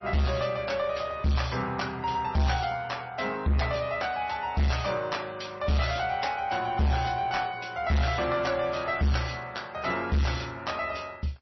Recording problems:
lossy codec; MP3, log-spectral distance 4 dB, nothing above 5.8 kHz
distortion; soft clipping, signal-to-distortion ratio 8 dB

